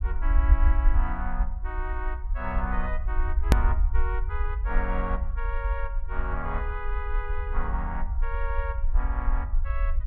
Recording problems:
low-frequency rumble; below 58 Hz, SNR -6 dB
edit click; at 3.5 s

